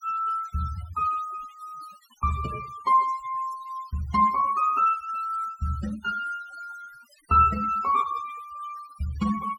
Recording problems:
noise reduction artefacts; signal-to-artefact ratio 17 dB

